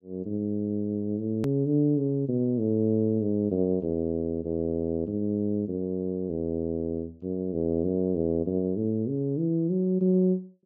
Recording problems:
treble missing; nothing above 8 kHz
edit click; at 1.5 s

